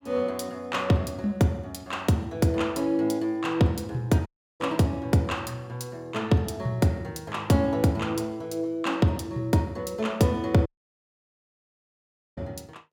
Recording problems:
audio cutting out; at 4.5 s and at 11 s for 1.5 s

